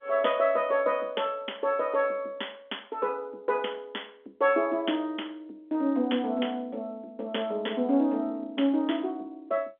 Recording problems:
phone line; 220 Hz to 3.5 kHz, G.711

